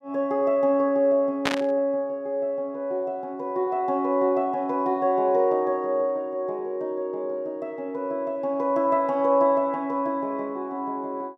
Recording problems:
burst of static; at 1.5 s; peak +4 dB vs average level

